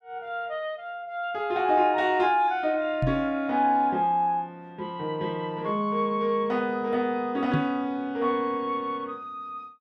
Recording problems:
microphone thump; at 3 s and at 7.5 s; peak +3 dB vs average level

